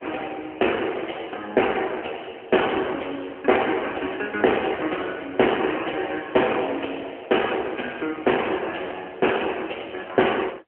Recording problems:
telephone audio; 280 Hz to 3.1 kHz, AMR-NB

